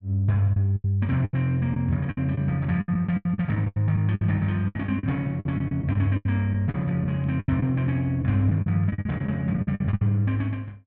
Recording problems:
packet loss; 14% of the sound replaced, filled with the last packet

